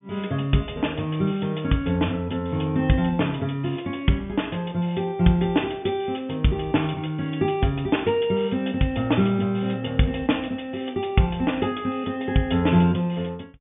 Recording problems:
low-pass filter; nothing above 3.5 kHz

